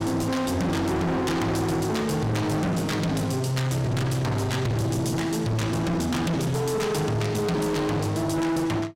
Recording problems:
distorted audio; hard clipping, signal-to-distortion ratio 6 dB

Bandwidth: 16 kHz